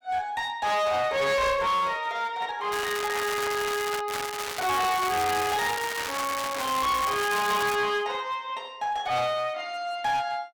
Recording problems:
distortion; hard clipping, uneven, signal-to-distortion ratio 6 dB
crackling; from 2.5 to 4 s and from 4 to 8 s; loose cable, SNR 6 dB

